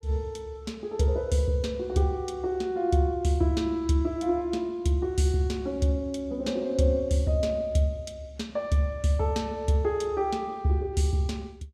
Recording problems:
none

